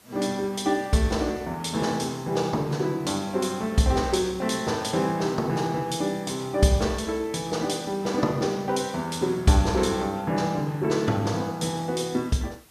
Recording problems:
hiss; slope -2 dB per octave, SNR 27 dB

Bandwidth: 14.5 kHz